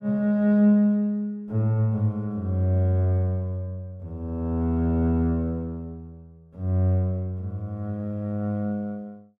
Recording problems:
none

